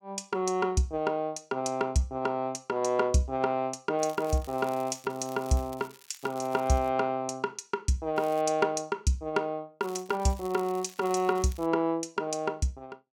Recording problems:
crackle; from 4 to 7 s, at 8 s and from 10 to 12 s; loose cable, SNR 22 dB

